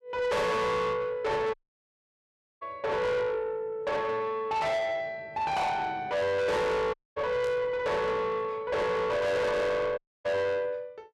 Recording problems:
distorted audio; soft clipping, signal-to-distortion ratio 6 dB
audio cutting out; at 1.5 s for 1 s, at 7 s and at 10 s
burst of static; at 7.5 s; peak -14 dB vs average level

